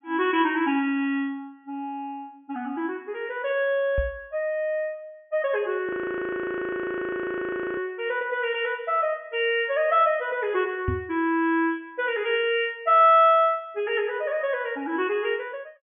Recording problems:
treble cut off; nothing above 3.1 kHz
microphone bump; at 4 s and at 11 s; peak +1 dB vs average level
audio freezing; at 6 s for 2 s

